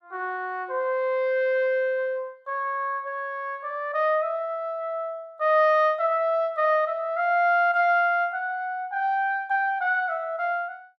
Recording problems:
none

